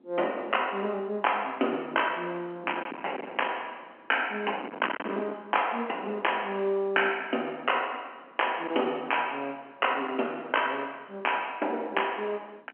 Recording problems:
phone line; 240 Hz to 3.2 kHz, G.711
distorted audio; hard clipping, signal-to-distortion ratio 14 dB
wind on the microphone; below 1.7 kHz, SNR 13 dB

